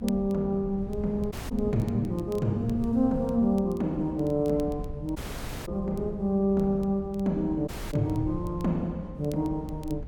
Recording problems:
hum; 50 Hz, harmonics up to 900 Hz, SNR 24 dB
rumble; below 82 Hz, SNR 14 dB
crackle; vinyl, SNR 29 dB
dropout; at 1.5 s, at 5 s for 0.5 s and at 7.5 s

